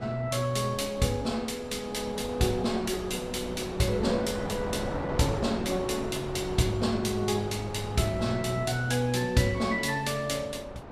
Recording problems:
wind noise; below 820 Hz, SNR 10 dB

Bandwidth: 14.5 kHz